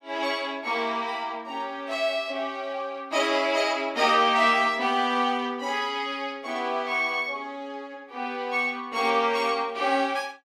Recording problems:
none

